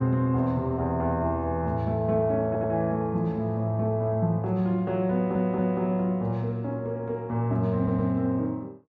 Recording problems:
stutter; at 2.5 s, at 5 s and at 8 s

